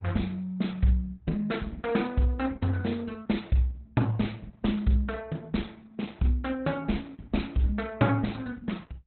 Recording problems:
lossy compression; Opus, log-spectral distance 3 dB, nothing above 4.1 kHz

